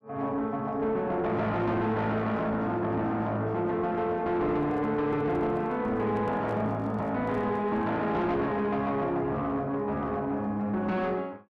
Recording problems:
distorted audio; soft clipping, signal-to-distortion ratio 10 dB
microphone handling noise; from 4.5 to 8 s; peak -9 dB vs average level

